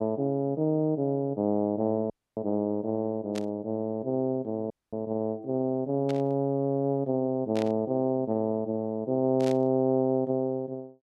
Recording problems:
dropout; at 2 s and at 4.5 s
burst of static; 4 times, first at 3.5 s; peak -8 dB vs average level

